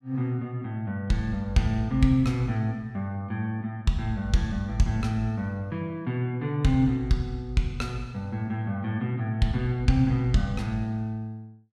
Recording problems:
none

